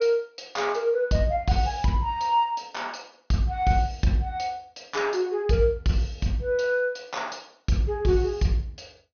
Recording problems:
treble missing; nothing above 6.4 kHz

